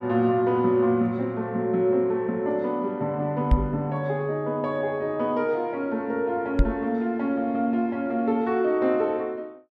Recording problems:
microphone thump; at 3.5 s and at 6.5 s; peak +8 dB vs average level

